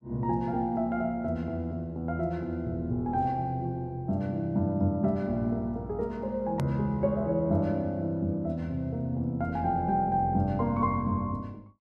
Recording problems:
hard cut with a click; at 6.5 s

